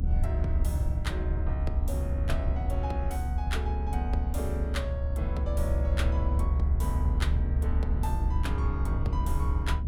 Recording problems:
low-frequency rumble; below 72 Hz, strongest tone 70 Hz, SNR -7 dB

